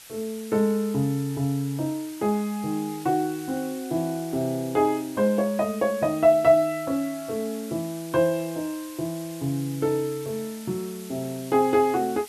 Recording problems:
background hiss; slope +2 dB per octave, SNR 17 dB

